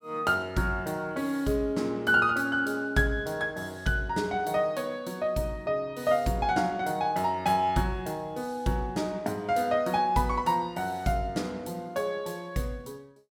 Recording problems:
none

